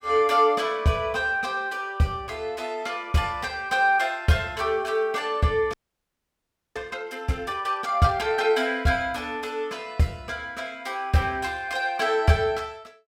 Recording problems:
audio freezing; at 5.5 s for 1 s

